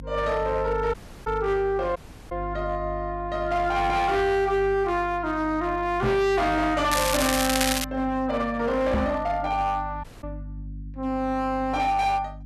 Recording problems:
distortion; hard clipping, signal-to-distortion ratio 10 dB
hum; 50 Hz, harmonics up to 300 Hz, SNR 14 dB
dropout; at 1 s, at 2 s and at 10 s
knock on the microphone; at 6 s and at 9 s; peak +3 dB vs average level
crackling; at 7 s; loose cable, SNR 1 dB

